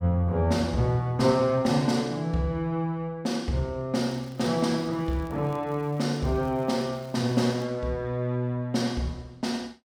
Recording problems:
crackling; from 4 to 5.5 s and from 5.5 to 7.5 s; loose cable, SNR 29 dB

